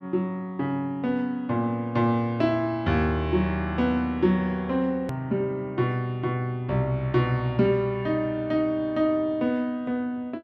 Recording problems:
click at an edit; at 5 s

